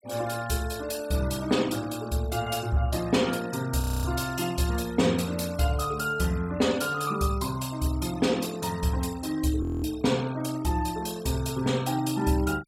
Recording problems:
noise reduction artefacts; signal-to-artefact ratio 17 dB
frozen audio; at 4 s and at 9.5 s

